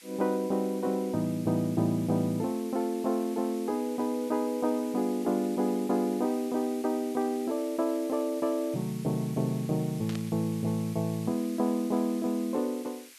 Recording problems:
hiss; SNR 19 dB
burst of static; at 10 s; peak -9 dB vs average level

